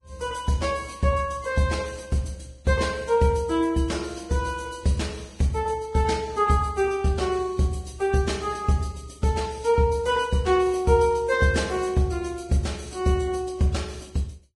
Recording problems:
lossy compression; Vorbis, log-spectral distance 4 dB, nothing above 10.7 kHz

